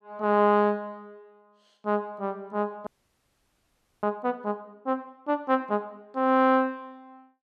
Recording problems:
audio freezing; at 3 s for 1 s

